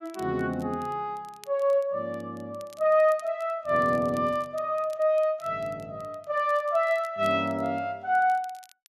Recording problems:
crackling; vinyl, SNR 28 dB

